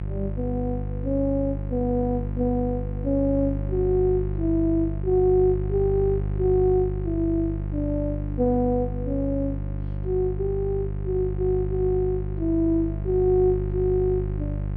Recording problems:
hum; 50 Hz, harmonics up to 550 Hz, SNR 5 dB

